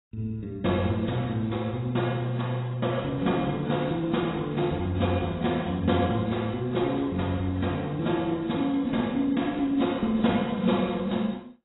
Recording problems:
codec artefacts; AAC, log-spectral distance 5 dB, nothing above 3.8 kHz

